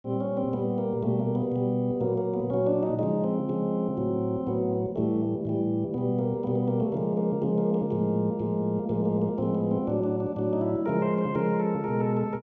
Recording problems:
none

